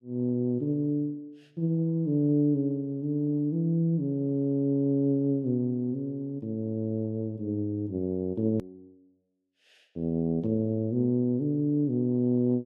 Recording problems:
hard cut with a click; at 8.5 s

